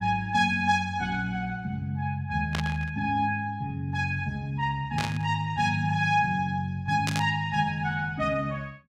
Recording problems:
static burst; at 2.5 s, at 5 s and at 7 s; peak +1 dB vs average level

